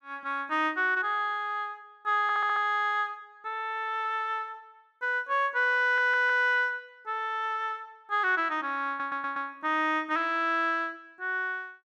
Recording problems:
audio stuttering; at 2 s, at 6 s and at 9 s

